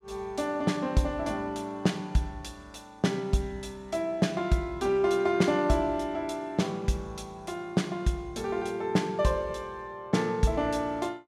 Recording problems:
none

